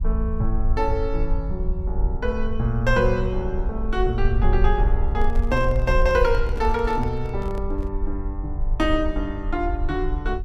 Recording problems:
low-frequency rumble; below 54 Hz, strongest tone 20 Hz, SNR 2 dB
microphone handling noise; from 5 to 8 s; peak -8 dB vs average level

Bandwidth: 15 kHz